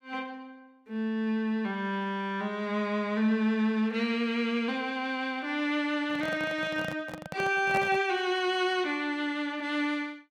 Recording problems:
microphone handling noise; from 6 to 8 s; peak -2 dB vs average level

